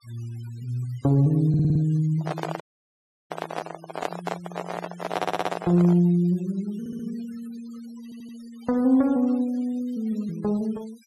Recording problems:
noise reduction artefacts; signal-to-artefact ratio 22 dB
stutter; 4 times, first at 1.5 s
microphone handling noise; from 2 to 6 s; peak 0 dB vs average level
dropout; at 2.5 s for 0.5 s

